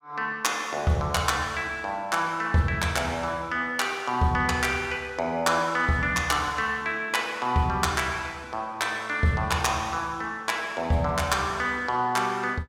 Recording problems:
none

